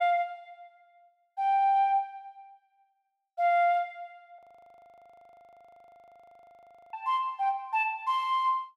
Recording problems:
frozen audio; at 4.5 s for 2.5 s

